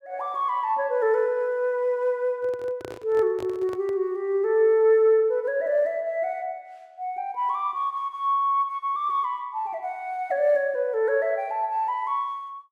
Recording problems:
handling noise; from 2.5 to 4 s; peak -8 dB vs average level

